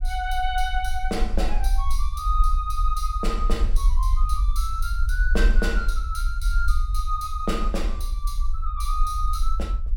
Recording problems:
low-frequency rumble; below 46 Hz, SNR -3 dB

